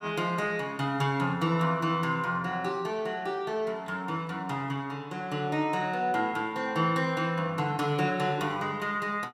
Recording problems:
none

